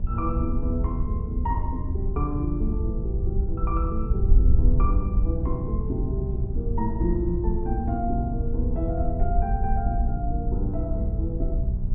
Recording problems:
treble missing; nothing above 4 kHz
hum; 60 Hz, harmonics up to 600 Hz, SNR 5 dB
wind noise; below 70 Hz, SNR -3 dB

